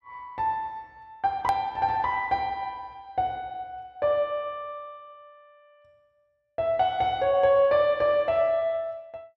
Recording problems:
hard cut with a click; at 1.5 s

